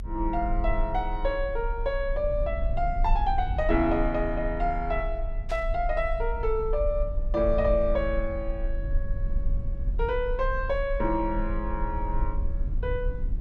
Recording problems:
rumble; below 50 Hz, strongest tone 28 Hz, SNR 4 dB
burst of static; at 5.5 s; peak -10 dB vs average level

